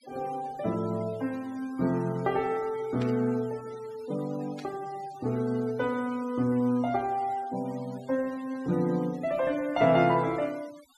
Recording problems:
denoising artefacts; signal-to-artefact ratio 22 dB
burst of static; at 3 s and at 4.5 s; peak -10 dB vs average level

